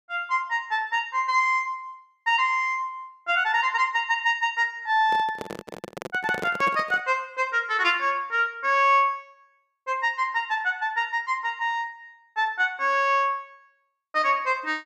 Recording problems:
microphone handling noise; from 5 to 7 s; peak -4 dB vs average level

